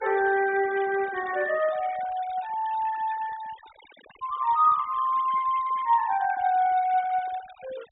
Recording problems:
treble missing; nothing above 4 kHz
denoising artefacts; signal-to-artefact ratio 21 dB

